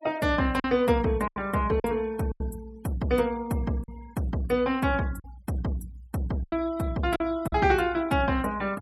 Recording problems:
denoising artefacts; signal-to-artefact ratio 22 dB
lost packets; 6% of the sound replaced, filled with silence

